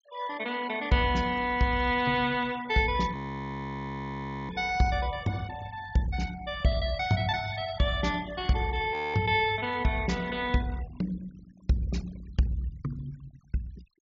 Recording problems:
treble missing; nothing above 7.2 kHz
noise reduction artefacts; signal-to-artefact ratio 19 dB
frozen audio; at 3 s for 1.5 s and at 9 s

